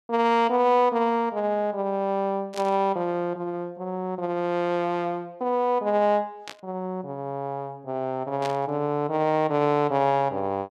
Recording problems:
burst of static; at 2.5 s, at 6.5 s and at 8.5 s; peak -7 dB vs average level

